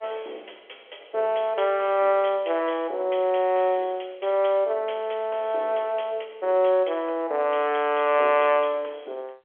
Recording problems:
telephone audio; 340 Hz to 3.3 kHz, G.711

